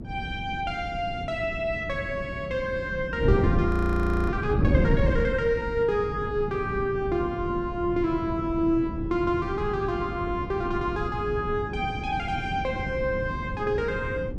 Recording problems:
hum; 60 Hz, harmonics up to 360 Hz, SNR 20 dB
wind on the microphone; below 210 Hz, SNR 4 dB
audio freezing; at 3.5 s for 0.5 s

